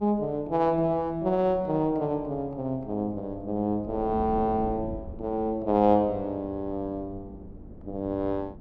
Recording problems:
wind on the microphone; below 270 Hz, SNR 16 dB

